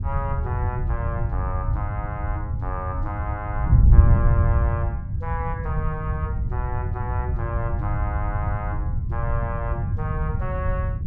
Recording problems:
wind noise; below 110 Hz, SNR -7 dB

